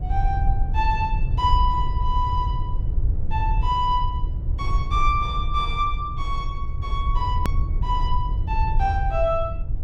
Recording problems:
rumble; below 72 Hz, SNR 0 dB
hard cut with a click; at 7.5 s

